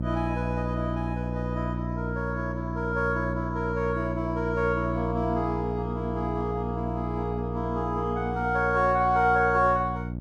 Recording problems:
electrical hum; 60 Hz, harmonics up to 660 Hz, SNR 4 dB

